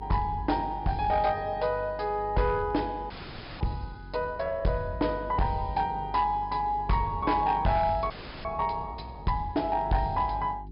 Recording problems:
treble missing; nothing above 5.5 kHz
distorted audio; hard clipping, uneven, signal-to-distortion ratio 10 dB
hum; 50 Hz, harmonics up to 400 Hz, SNR 16 dB
audio freezing; at 3 s for 0.5 s and at 8 s

